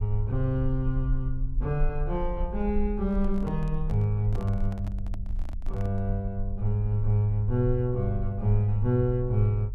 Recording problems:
low-frequency rumble; below 48 Hz, strongest tone 20 Hz, SNR 7 dB
handling noise; from 3 to 6 s; peak -11 dB vs average level

